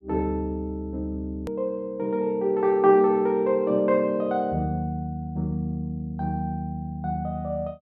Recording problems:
edit click; at 1.5 s

